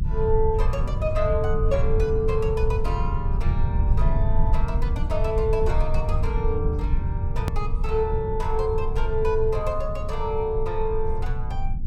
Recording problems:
rumble; below 82 Hz, strongest tone 20 Hz, SNR -1 dB
click at an edit; at 7.5 s

